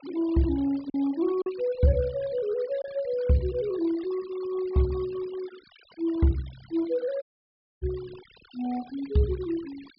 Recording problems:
treble missing; nothing above 5.1 kHz
noise reduction artefacts; signal-to-artefact ratio 22 dB
lost packets; 1.1% of the sound replaced, filled with silence
dropout; at 7 s for 0.5 s

